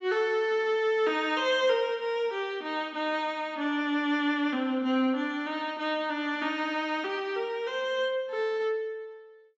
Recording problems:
treble cut off; nothing above 7.8 kHz

